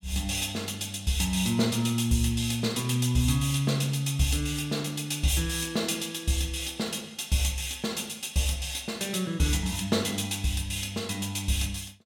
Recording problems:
none

